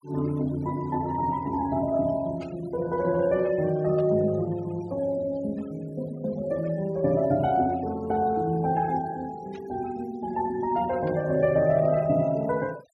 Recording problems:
denoising artefacts; signal-to-artefact ratio 23 dB
burst of static; 4 times, first at 2.5 s; peak -17 dB vs average level

